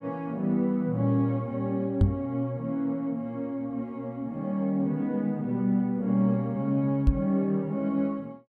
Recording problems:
knock on the microphone; at 2 s and at 7 s; peak +9 dB vs average level

